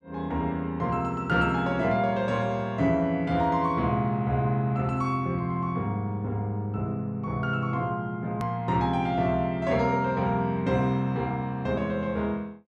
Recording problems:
edit click; at 8.5 s

